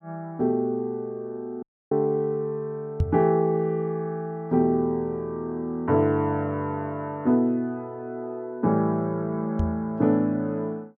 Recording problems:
dropout; at 1.5 s
knock on the microphone; at 3 s and at 9.5 s; peak +5 dB vs average level

